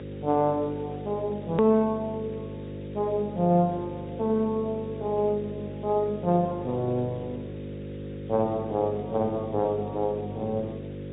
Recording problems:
treble missing; nothing above 3.8 kHz
codec artefacts; Speex, log-spectral distance 3 dB
hum; 50 Hz, harmonics up to 550 Hz, SNR 9 dB
hiss; SNR 26 dB
click at an edit; at 1.5 s

